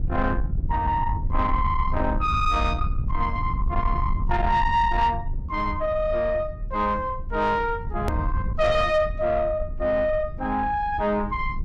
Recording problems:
distortion; soft clipping, signal-to-distortion ratio 12 dB
low-frequency rumble; below 98 Hz, SNR 5 dB
edit click; at 8 s

